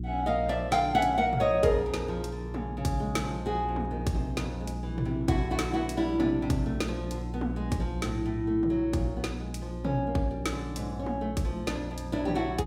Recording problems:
hum; 60 Hz, harmonics up to 360 Hz, SNR 7 dB

